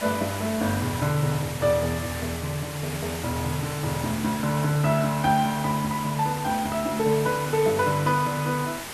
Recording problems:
hiss; slope -2 dB per octave, SNR 9 dB

